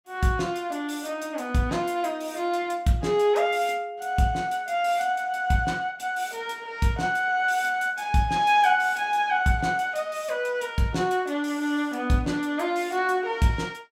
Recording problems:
none

